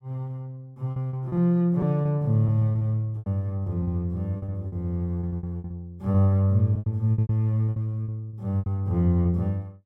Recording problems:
lost packets; 14% of the sound replaced, filled with repeated pitch periods

